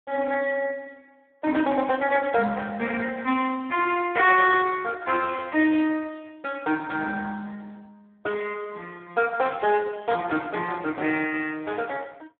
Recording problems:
phone line; 220 Hz to 3.6 kHz, Speex

